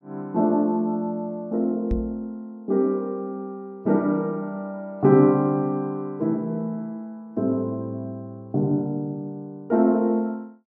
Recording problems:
microphone thump; at 2 s; peak 0 dB vs average level

